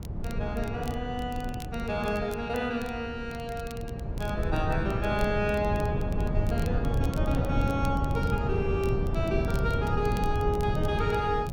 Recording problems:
wind noise; below 180 Hz, SNR 0 dB
crackle; vinyl, SNR 20 dB

